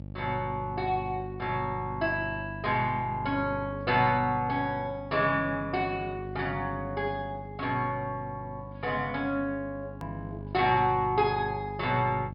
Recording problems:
low-pass filter; nothing above 5.5 kHz
hum; 50 Hz, harmonics up to 600 Hz, SNR 11 dB
hard cut with a click; at 10 s

